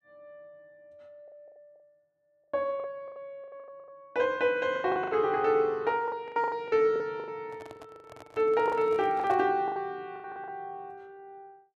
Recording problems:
lost packets; 15% of the sound replaced, filled with the last packet
handling noise; from 7.5 to 9.5 s; peak -11 dB vs average level

